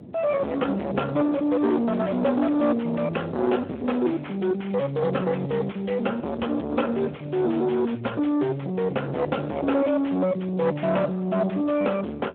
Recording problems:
phone line; 240 Hz to 2.5 kHz, Speex
distorted audio; soft clipping, signal-to-distortion ratio 5 dB
wind noise; below 740 Hz, SNR 16 dB

